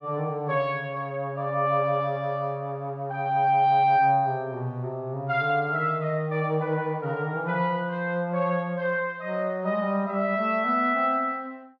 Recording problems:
none

